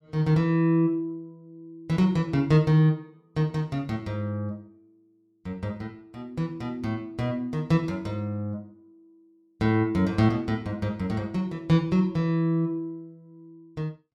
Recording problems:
none

